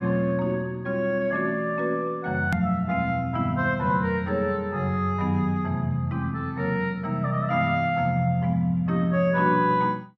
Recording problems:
edit click; at 2.5 s

